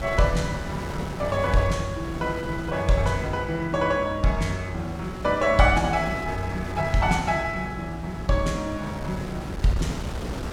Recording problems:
mains hum; 60 Hz, harmonics up to 660 Hz, SNR 17 dB
wind on the microphone; below 680 Hz, SNR 10 dB

